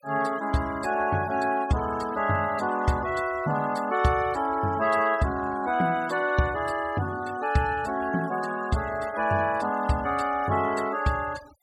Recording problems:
denoising artefacts; signal-to-artefact ratio 20 dB

